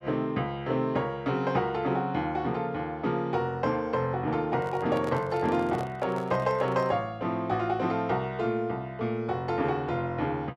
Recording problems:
handling noise; from 4.5 to 7 s; peak -5 dB vs average level

